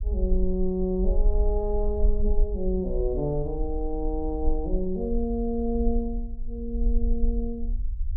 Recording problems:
low-frequency rumble; below 46 Hz, strongest tone 24 Hz, SNR 1 dB

